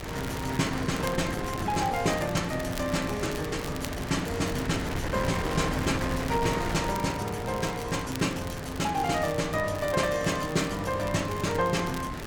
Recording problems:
wind noise; below 1.3 kHz, SNR 6 dB
crackling; vinyl, SNR 15 dB

